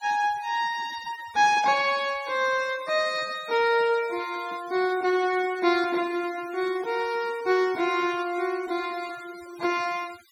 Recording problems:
denoising artefacts; signal-to-artefact ratio 20 dB

